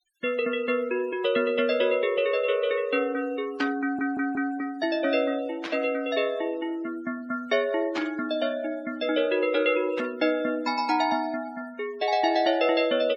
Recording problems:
noise reduction artefacts; signal-to-artefact ratio 22 dB
static burst; 4 times, first at 3.5 s; peak -3 dB vs average level
audio stuttering; at 4 s

